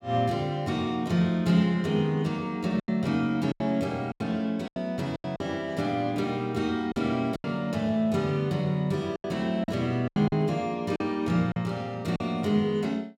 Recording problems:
lost packets; 7% of the sound replaced, filled with silence

